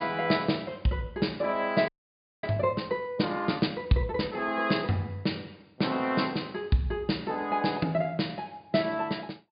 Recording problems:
treble cut off; nothing above 4.9 kHz
frozen audio; at 2 s for 0.5 s

